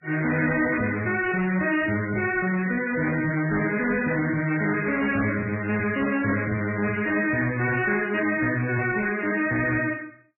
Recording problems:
lossy compression; MP3, log-spectral distance 6 dB, nothing above 2.6 kHz
distorted audio; hard clipping, signal-to-distortion ratio 11 dB

